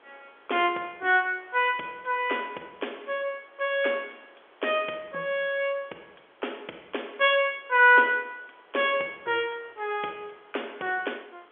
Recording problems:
phone line; 300 Hz to 3.4 kHz, G.711
background hiss; SNR 29 dB

